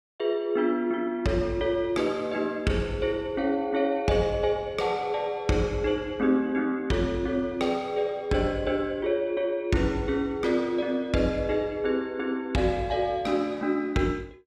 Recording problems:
none

